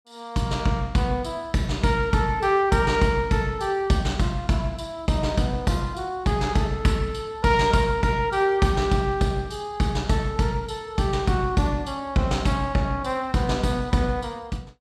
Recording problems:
none

